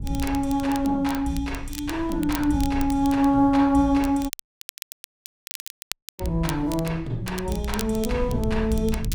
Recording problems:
low-frequency rumble; below 100 Hz, SNR 12 dB
crackle; vinyl, SNR 16 dB
dropout; at 4.5 s for 2 s

